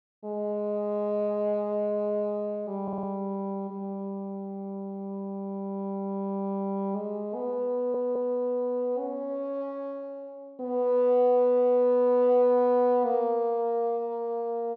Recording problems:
stutter; at 3 s and at 7.5 s

